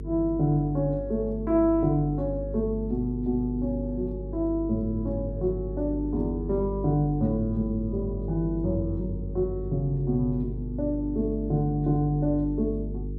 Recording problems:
hum; 50 Hz, harmonics up to 450 Hz, SNR 7 dB

